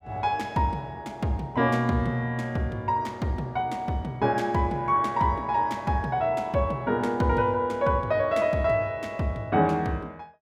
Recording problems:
none

